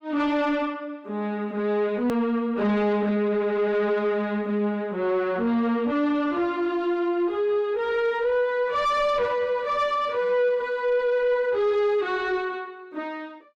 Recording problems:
distorted audio; soft clipping, signal-to-distortion ratio 11 dB
hard cut with a click; at 2 s

